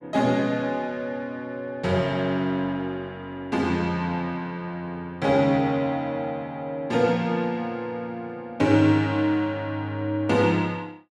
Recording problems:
none

